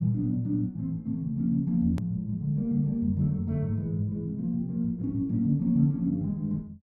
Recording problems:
click at an edit; at 2 s

